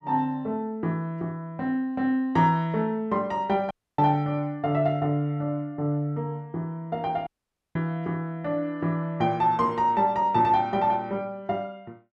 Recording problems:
dropout; at 3.5 s and at 7.5 s

